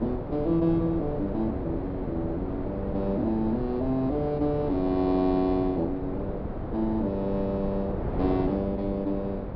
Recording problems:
treble cut off; nothing above 5.5 kHz
wind noise; below 460 Hz, SNR 6 dB

